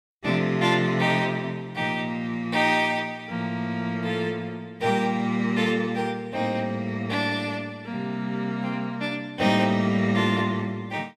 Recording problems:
none

